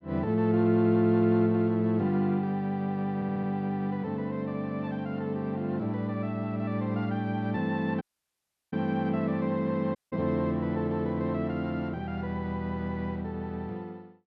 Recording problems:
audio stuttering; at 3 s
audio cutting out; at 8 s for 0.5 s and at 10 s

